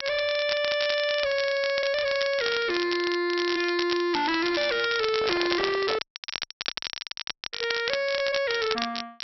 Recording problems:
treble missing; nothing above 5.6 kHz
distortion; soft clipping, signal-to-distortion ratio 6 dB
crackle; vinyl, SNR 7 dB
microphone handling noise; from 5 to 6 s; peak +3 dB vs average level
dropout; at 6 s for 1.5 s

